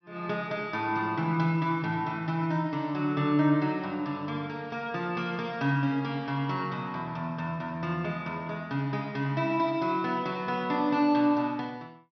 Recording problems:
low-pass filter; nothing above 5.9 kHz

